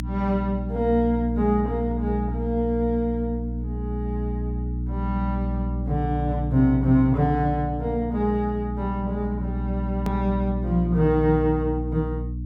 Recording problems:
electrical hum; 60 Hz, harmonics up to 300 Hz, SNR 5 dB
click at an edit; at 10 s

